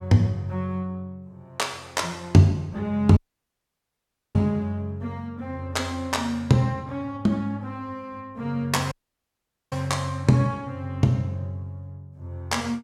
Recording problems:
audio cutting out; at 3 s for 1 s and at 9 s for 1 s

